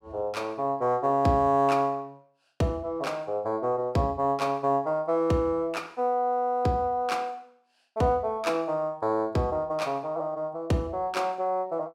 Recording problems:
none

